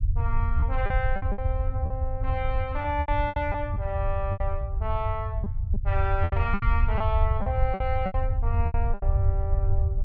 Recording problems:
low-pass filter; nothing above 8 kHz
low-frequency rumble; below 86 Hz, SNR -3 dB
lost packets; 11% of the sound replaced, filled with repeated pitch periods

